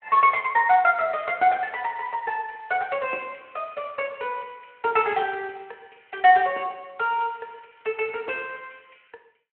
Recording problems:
telephone audio; 300 Hz to 3.1 kHz, Speex

